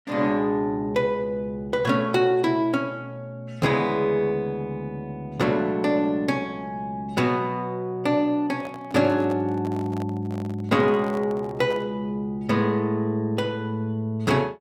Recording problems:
microphone handling noise; from 8.5 to 12 s; peak -10 dB vs average level

